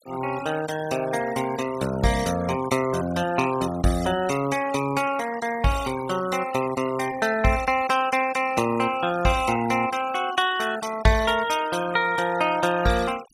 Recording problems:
noise reduction artefacts; signal-to-artefact ratio 15 dB

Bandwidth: 15.5 kHz